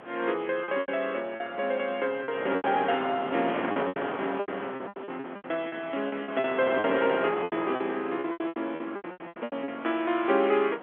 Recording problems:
telephone audio; 240 Hz to 3.4 kHz, G.711
wind noise; below 1.3 kHz, SNR 8 dB
lost packets; 16% of the sound replaced, filled with repeated pitch periods

